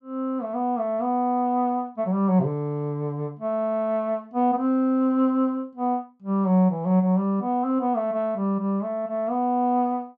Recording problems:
none

